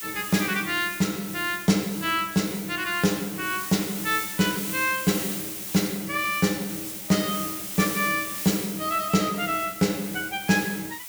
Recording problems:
hiss; slope +3 dB per octave, SNR 7 dB

